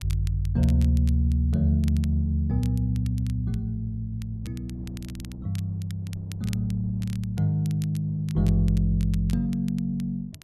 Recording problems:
wind noise; below 240 Hz, SNR 26 dB
crackle; vinyl, SNR 23 dB

